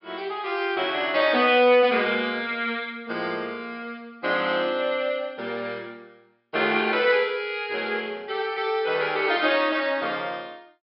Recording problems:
treble cut off; nothing above 5.3 kHz

